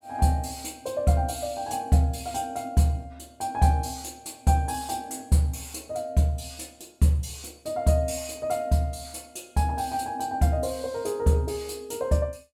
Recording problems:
none

